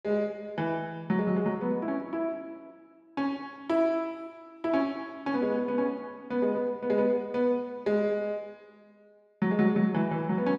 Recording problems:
none

